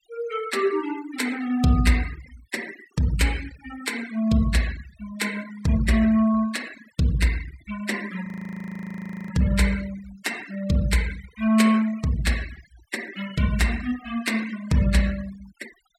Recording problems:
denoising artefacts; signal-to-artefact ratio 17 dB
audio freezing; at 8.5 s for 1 s

